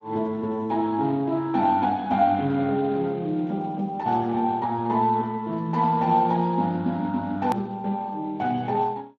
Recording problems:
lossy compression; Speex, log-spectral distance 2 dB, nothing above 13.1 kHz
edit click; at 7.5 s

